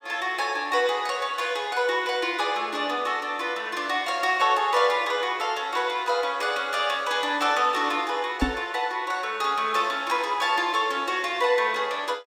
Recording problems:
microphone thump; at 8.5 s; peak +4 dB vs average level

